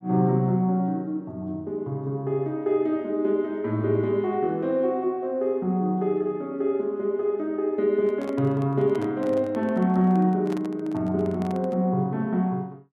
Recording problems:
handling noise; from 8 to 12 s; peak -9 dB vs average level

